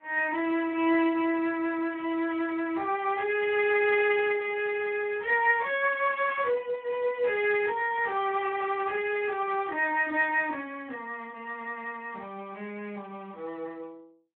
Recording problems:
telephone audio; 220 Hz to 3.6 kHz, Speex

